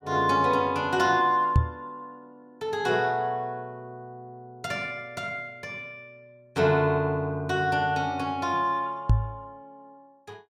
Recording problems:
knock on the microphone; at 1.5 s and at 9 s; peak +8 dB vs average level

